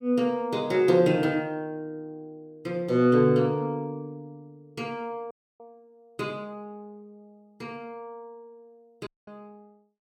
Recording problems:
dropout; at 5.5 s and at 9 s

